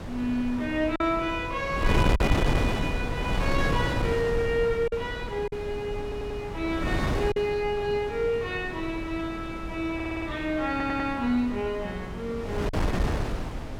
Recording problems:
wind noise; below 440 Hz, SNR 2 dB
packet loss; 1.9% of the sound replaced, filled with silence
audio stuttering; at 6 s, at 10 s and at 11 s

